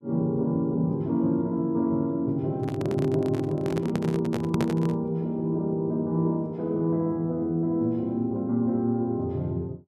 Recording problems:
microphone handling noise; from 2.5 to 5 s; peak +1 dB vs average level

